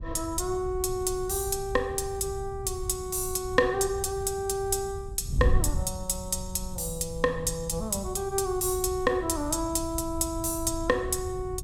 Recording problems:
wind noise; below 88 Hz, SNR 9 dB

